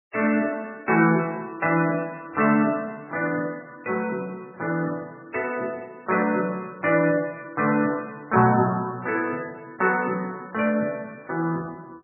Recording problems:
lossy codec; MP3, log-spectral distance 3 dB, nothing above 2.7 kHz

